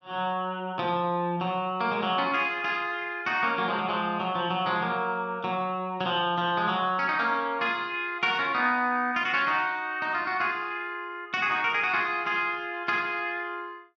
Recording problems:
none

